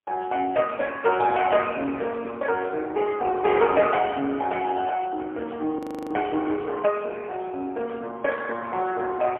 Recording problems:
phone line; 240 Hz to 3 kHz, AMR-NB, then MP3
frozen audio; at 6 s

